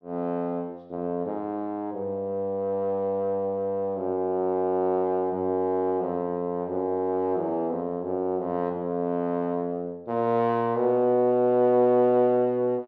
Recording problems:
none

